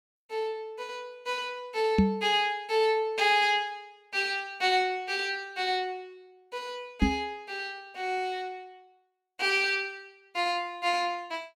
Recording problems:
knock on the microphone; at 2 s and at 7 s; peak +9 dB vs average level

